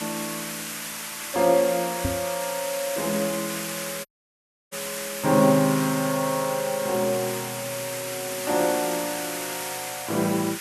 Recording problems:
background hiss; SNR 6 dB
microphone bump; at 2 s; peak +1 dB vs average level
audio cutting out; at 4 s for 0.5 s

